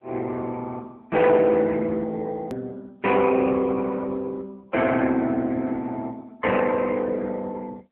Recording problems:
telephone audio; 170 Hz to 3.5 kHz, AMR-NB
click at an edit; at 2.5 s

